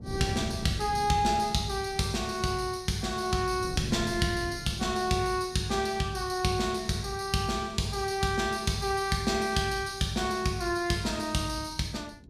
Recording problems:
wind noise; below 230 Hz, SNR 14 dB

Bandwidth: 15.5 kHz